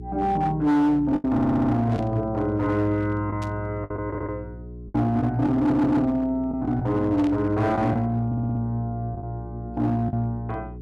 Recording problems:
distorted audio; hard clipping, uneven, signal-to-distortion ratio 10 dB
electrical hum; 60 Hz, harmonics up to 420 Hz, SNR 15 dB
lost packets; 5% of the sound replaced, filled with the last packet
stutter; 4 times, first at 1.5 s
burst of static; at 2 s, at 3.5 s and at 7 s; peak -13 dB vs average level

